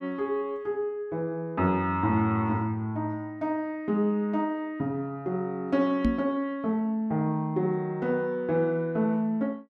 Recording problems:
knock on the microphone; at 6 s; peak +6 dB vs average level

